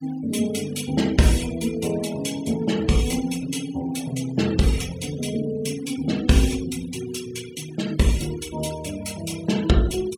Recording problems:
denoising artefacts; signal-to-artefact ratio 16 dB

